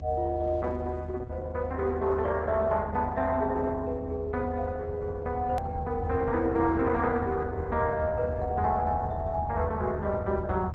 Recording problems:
lossy compression; Opus, log-spectral distance 2 dB
hum; 50 Hz, harmonics up to 300 Hz, SNR 16 dB
low-frequency rumble; below 90 Hz, strongest tone 78 Hz, SNR 7 dB
click at an edit; at 5.5 s

